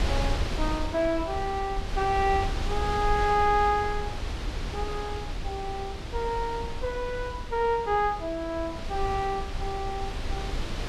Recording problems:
wind noise; below 230 Hz, SNR 5 dB

